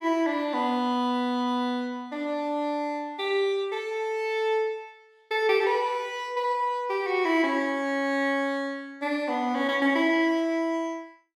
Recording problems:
none

